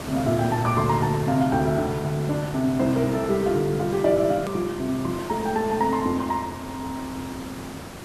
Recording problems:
background hiss; slope -5 dB per octave, SNR 12 dB
hard cut with a click; at 4.5 s

